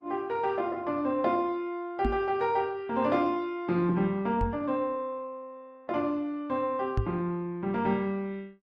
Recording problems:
lossy codec; Opus, log-spectral distance 2 dB
knock on the microphone; at 2 s, at 4.5 s and at 7 s; peak +4 dB vs average level

